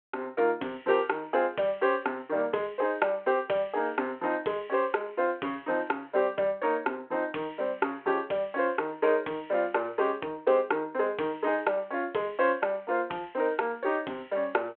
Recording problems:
phone line; 320 Hz to 3.2 kHz, G.726

